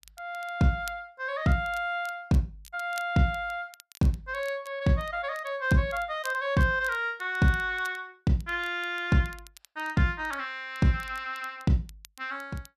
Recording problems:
crackle; vinyl, SNR 23 dB

